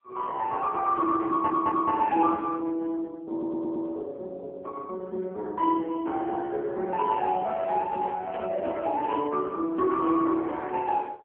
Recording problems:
telephone audio; 260 Hz to 2.6 kHz, AMR-NB
stutter; at 1.5 s and at 3.5 s
microphone handling noise; from 7.5 to 9.5 s; peak -7 dB vs average level

